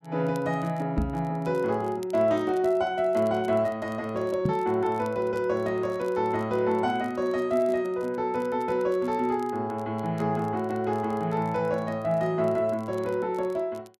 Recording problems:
crackle; vinyl, SNR 30 dB
microphone thump; at 1 s and at 4.5 s; peak +3 dB vs average level

